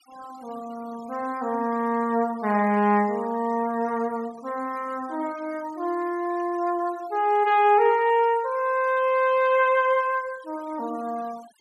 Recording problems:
noise reduction artefacts; signal-to-artefact ratio 24 dB

